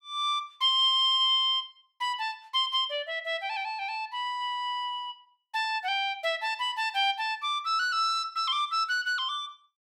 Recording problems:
none

